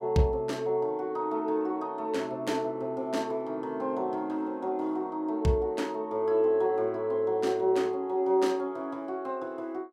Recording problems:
none

